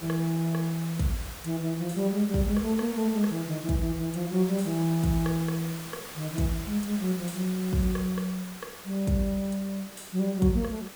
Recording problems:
background hiss; slope -2 dB per octave, SNR 13 dB

